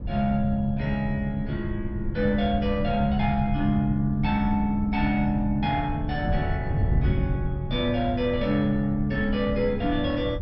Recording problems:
treble cut off; nothing above 5.4 kHz
wind on the microphone; below 130 Hz, SNR 6 dB

